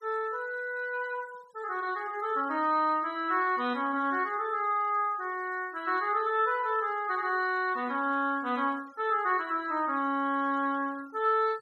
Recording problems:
denoising artefacts; signal-to-artefact ratio 27 dB

